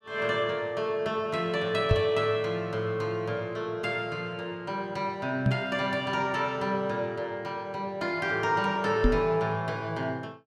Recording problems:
microphone thump; at 2 s, at 5.5 s and at 9 s; peak +9 dB vs average level

